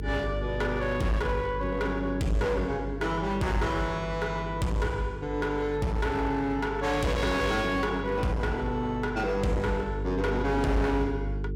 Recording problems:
distorted audio; hard clipping, uneven, signal-to-distortion ratio 8 dB
electrical hum; 50 Hz, harmonics up to 450 Hz, SNR 8 dB

